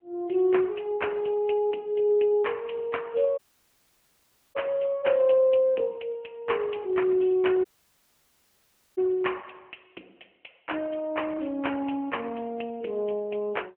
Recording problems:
phone line; 240 Hz to 3.3 kHz, AMR-NB
dropout; at 3.5 s for 1 s and at 7.5 s for 1.5 s

